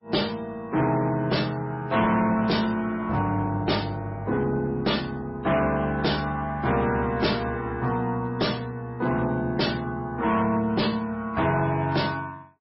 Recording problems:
lossy compression; MP3, log-spectral distance 3 dB, nothing above 5.5 kHz
distorted audio; hard clipping, signal-to-distortion ratio 11 dB

